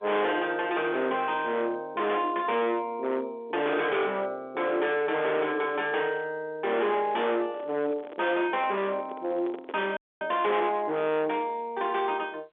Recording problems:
phone line; 260 Hz to 3.5 kHz, G.711
distortion; hard clipping, signal-to-distortion ratio 6 dB
handling noise; from 7.5 to 10 s; peak -8 dB vs average level
frozen audio; at 10 s

